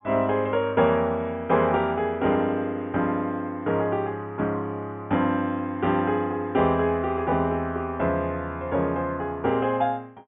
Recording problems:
low-pass filter; nothing above 3.6 kHz

